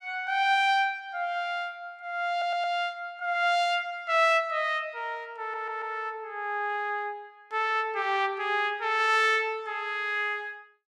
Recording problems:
audio stuttering; at 2.5 s and at 5.5 s

